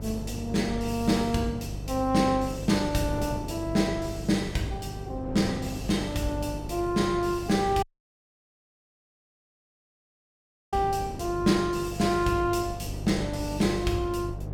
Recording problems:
mains hum; 50 Hz, harmonics up to 500 Hz, SNR 11 dB
wind on the microphone; below 390 Hz, SNR 13 dB
dropout; at 8 s for 3 s

